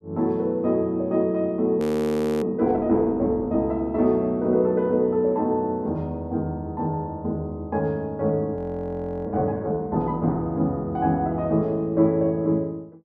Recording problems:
audio freezing; at 2 s for 0.5 s and at 8.5 s for 0.5 s

